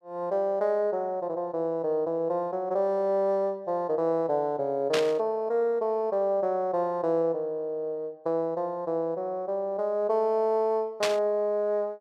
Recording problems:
burst of static; at 5 s and at 11 s; peak +3 dB vs average level

